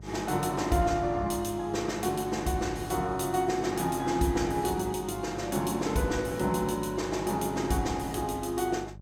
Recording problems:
hum; 50 Hz, harmonics up to 600 Hz, SNR 17 dB

